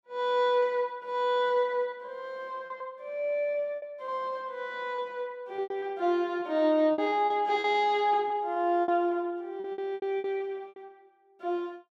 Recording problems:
packet loss; 9% of the sound replaced, filled with repeated pitch periods

